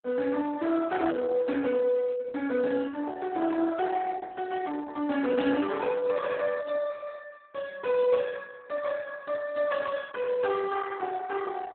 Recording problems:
lossy compression; Speex, then Opus, log-spectral distance 4 dB, nothing above 3.8 kHz

